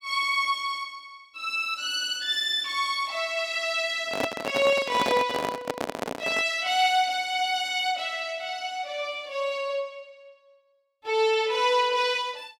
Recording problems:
handling noise; from 4 to 6.5 s; peak +1 dB vs average level

